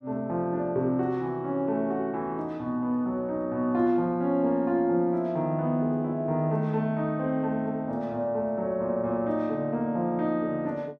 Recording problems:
none

